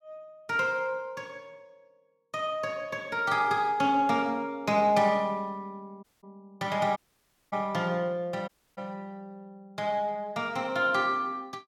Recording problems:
dropout; at 6 s, at 7 s for 0.5 s and at 8.5 s

